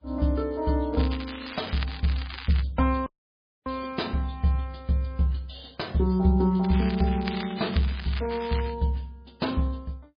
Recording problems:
lossy compression; MP3, log-spectral distance 6 dB, nothing above 4.1 kHz
crackle; from 1 to 2.5 s and from 6.5 to 8.5 s; loose cable, SNR 12 dB
dropout; at 3 s for 0.5 s

